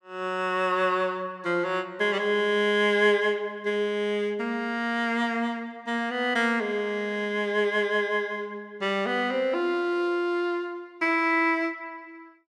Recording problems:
none

